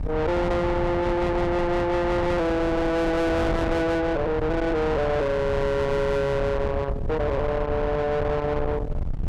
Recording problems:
distorted audio; soft clipping, signal-to-distortion ratio 6 dB
wind on the microphone; below 590 Hz, SNR 5 dB

